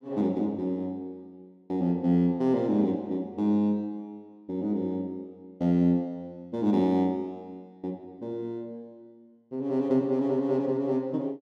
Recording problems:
none

